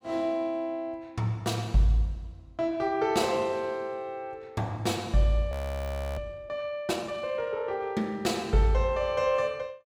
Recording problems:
audio freezing; at 5.5 s for 0.5 s

